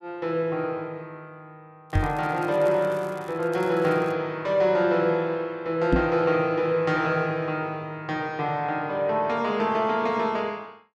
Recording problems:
crackling; from 2 to 4 s; loose cable, SNR 27 dB
microphone thump; at 2 s and at 6 s; peak +6 dB vs average level

